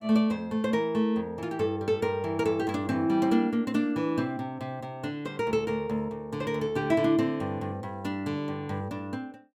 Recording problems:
none

